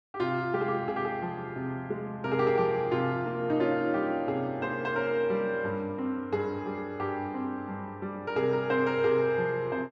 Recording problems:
none

